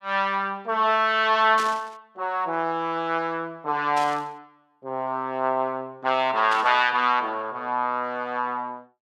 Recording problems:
static burst; at 1.5 s, at 4 s and at 6.5 s; peak -6 dB vs average level

